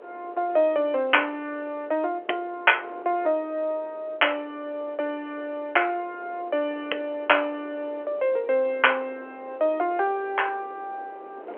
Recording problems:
telephone audio; 320 Hz to 3.2 kHz, G.711
wind on the microphone; below 720 Hz, SNR 21 dB

